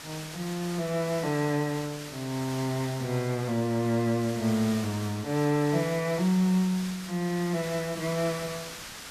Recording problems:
hiss; slope 0 dB per octave, SNR 12 dB

